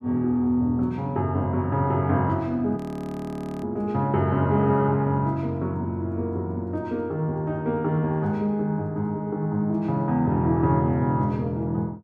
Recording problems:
audio freezing; at 3 s for 1 s

